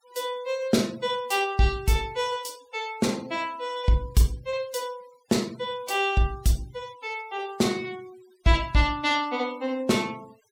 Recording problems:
noise reduction artefacts; signal-to-artefact ratio 24 dB

